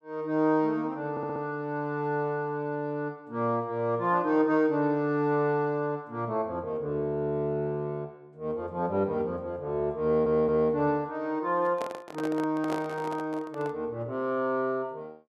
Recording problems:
audio stuttering; at 1 s and at 10 s
handling noise; from 12 to 14 s; peak -2 dB vs average level

